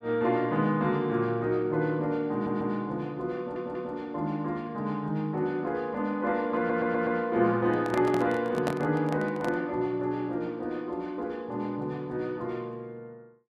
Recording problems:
audio stuttering; at 2.5 s, at 3.5 s and at 6.5 s
handling noise; from 7.5 to 9.5 s; peak +2 dB vs average level

